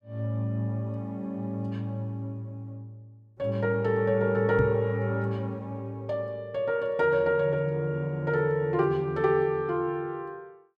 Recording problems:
microphone bump; at 4.5 s; peak +3 dB vs average level

